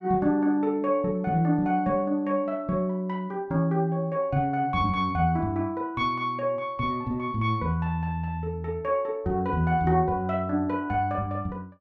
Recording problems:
none

